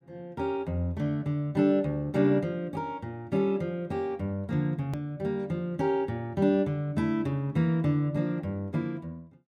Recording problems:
edit click; at 5 s

